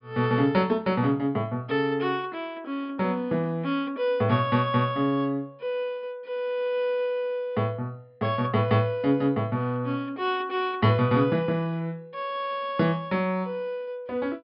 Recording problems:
treble missing; nothing above 5.5 kHz

